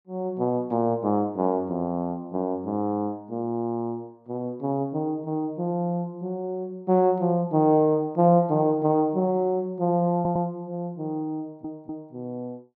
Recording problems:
audio stuttering; at 10 s and at 11 s

